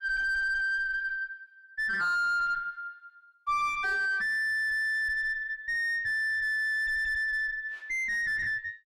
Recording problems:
distorted audio; soft clipping, signal-to-distortion ratio 4 dB

